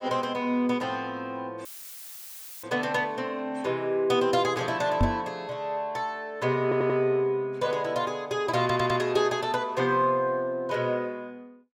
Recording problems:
dropout; at 1.5 s for 1 s; filled with static
microphone thump; at 5 s; peak +6 dB vs average level
audio stuttering; at 6.5 s and at 8.5 s

